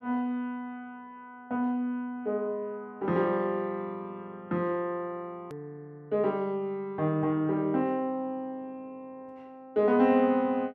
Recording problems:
click at an edit; at 5.5 s

